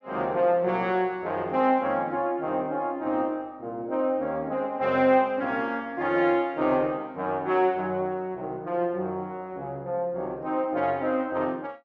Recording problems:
low-pass filter; nothing above 8 kHz

